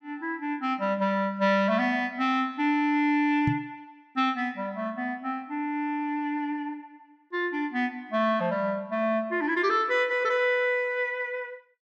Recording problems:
microphone thump; at 3.5 s; peak +3 dB vs average level

